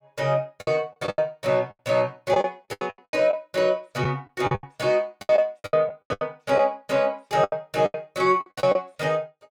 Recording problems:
packet loss; 17% of the sound replaced, filled with the last packet

